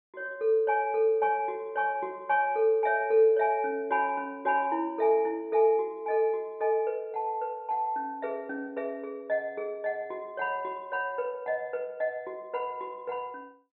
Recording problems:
treble missing; nothing above 4 kHz

